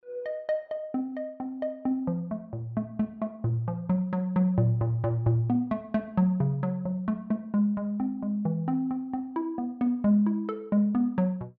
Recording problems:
none

